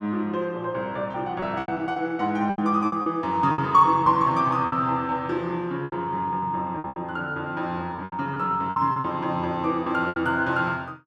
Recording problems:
packet loss; 10% of the sound replaced, filled with repeated pitch periods

